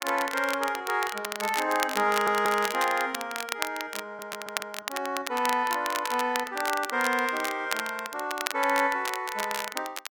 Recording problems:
crackling; vinyl, SNR 7 dB
audio stuttering; at 2 s and at 4 s

